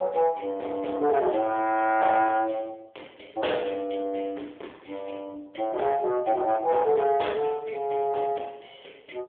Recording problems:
telephone audio; 320 Hz to 3.4 kHz, AMR-NB
distortion; soft clipping, signal-to-distortion ratio 10 dB

